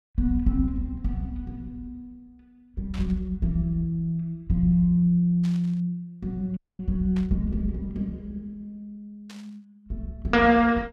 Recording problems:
burst of static; 4 times, first at 3 s; peak -13 dB vs average level
audio cutting out; at 6.5 s

